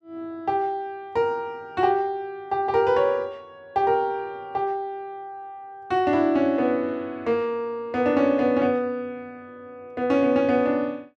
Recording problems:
none

